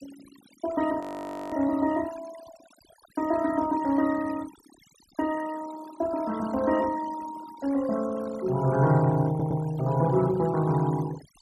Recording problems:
noise reduction artefacts; signal-to-artefact ratio 16 dB
audio freezing; at 1 s for 0.5 s
audio stuttering; at 9.5 s

